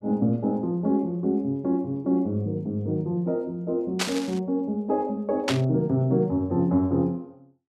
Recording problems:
burst of static; at 4 s and at 5.5 s; peak +4 dB vs average level

